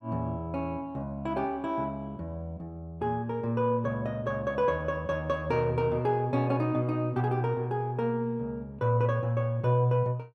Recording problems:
none

